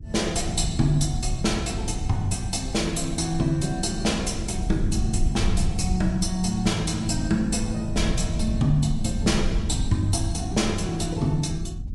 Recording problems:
codec artefacts; Vorbis, log-spectral distance 4 dB, nothing above 11 kHz
low-frequency rumble; below 110 Hz, SNR 5 dB

